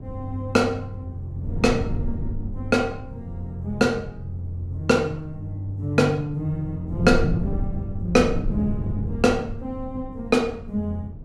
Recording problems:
wind noise; below 160 Hz, SNR 8 dB

